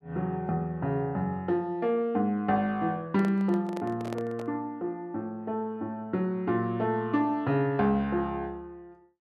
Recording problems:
handling noise; from 3 to 4.5 s; peak -5 dB vs average level

